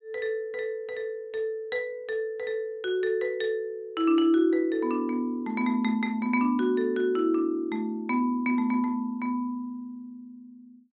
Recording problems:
treble cut off; nothing above 4 kHz

